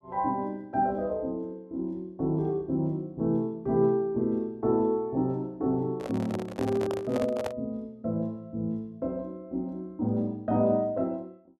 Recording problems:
handling noise; from 6 to 7.5 s; peak 0 dB vs average level

